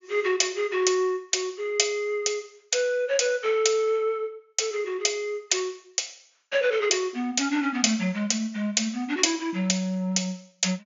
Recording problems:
low-pass filter; nothing above 7.1 kHz

